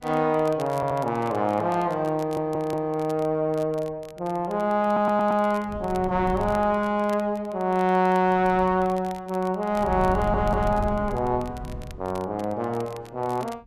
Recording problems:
wind noise; below 160 Hz, SNR 11 dB
crackling; vinyl, SNR 25 dB
stutter; 4 times, first at 1 s

